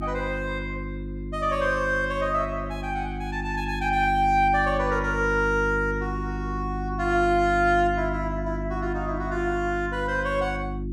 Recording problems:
hum; 50 Hz, harmonics up to 350 Hz, SNR 6 dB

